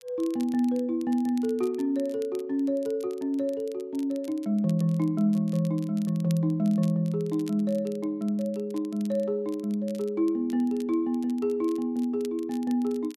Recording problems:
crackling; vinyl, SNR 25 dB

